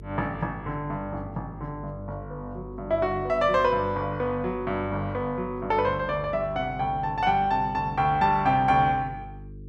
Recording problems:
electrical hum; 50 Hz, harmonics up to 450 Hz, SNR 16 dB

